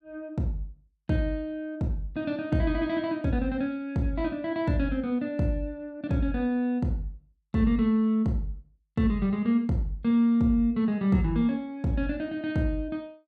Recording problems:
none

